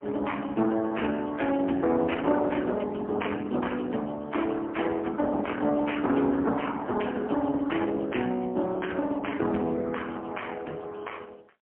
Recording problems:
telephone audio; 190 Hz to 3.2 kHz, AMR-NB, then MP3

